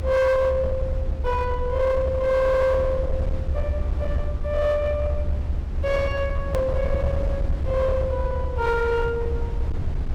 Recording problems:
distorted audio; hard clipping, signal-to-distortion ratio 11 dB
low-frequency rumble; below 82 Hz, SNR 3 dB
hard cut with a click; at 6.5 s

